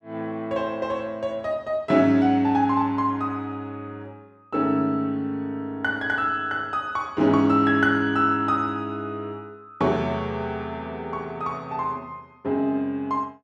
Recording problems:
none

